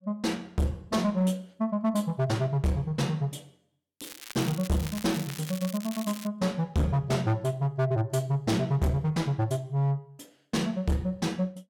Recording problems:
distortion; hard clipping, uneven, signal-to-distortion ratio 7 dB
crackling; from 4 to 6.5 s; loose cable, SNR 12 dB

